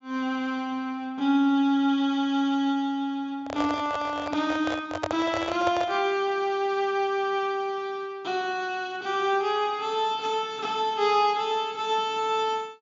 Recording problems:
treble cut off; nothing above 8 kHz
microphone handling noise; from 3.5 to 6 s; peak +2 dB vs average level

